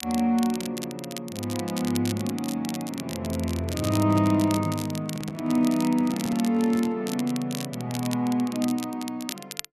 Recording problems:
crackling; vinyl, SNR 12 dB
handling noise; from 3.5 to 7 s; peak -6 dB vs average level

